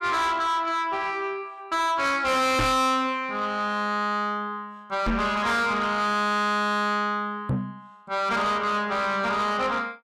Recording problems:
distortion; soft clipping, signal-to-distortion ratio 7 dB
microphone thump; at 2.5 s, at 5 s and at 7.5 s; peak +6 dB vs average level

